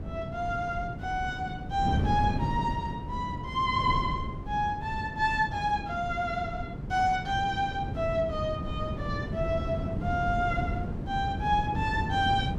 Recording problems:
wind on the microphone; below 230 Hz, SNR 4 dB

